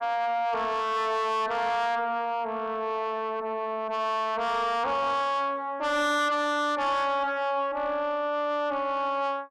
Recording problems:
distorted audio; soft clipping, signal-to-distortion ratio 8 dB

